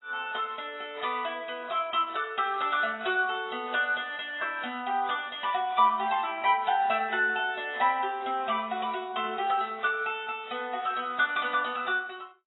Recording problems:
lossy compression; AAC, log-spectral distance 4 dB, nothing above 3.8 kHz

